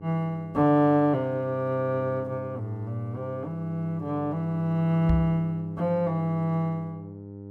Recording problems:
electrical hum; 50 Hz, harmonics up to 900 Hz, SNR 15 dB
microphone thump; at 5 s; peak +3 dB vs average level

